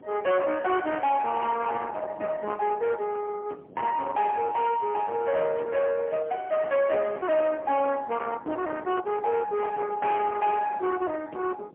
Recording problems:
telephone audio; 280 Hz to 3.4 kHz, AMR-NB, then MP3
distorted audio; soft clipping, signal-to-distortion ratio 11 dB
wind on the microphone; below 1.2 kHz, SNR 17 dB

